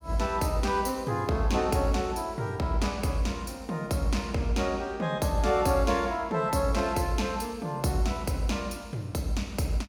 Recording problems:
none

